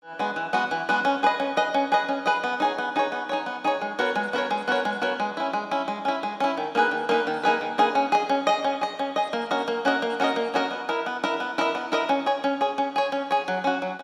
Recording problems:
none

